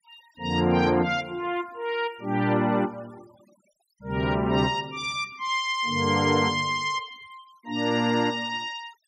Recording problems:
noise reduction artefacts; signal-to-artefact ratio 26 dB

